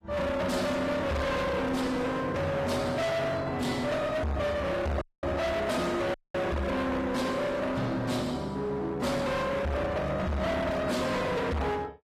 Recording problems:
lossy codec; AAC, log-spectral distance 3 dB
distorted audio; hard clipping, uneven, signal-to-distortion ratio 5 dB
audio cutting out; at 5 s and at 6 s

